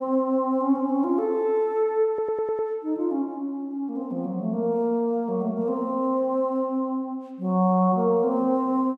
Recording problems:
stutter; at 2 s

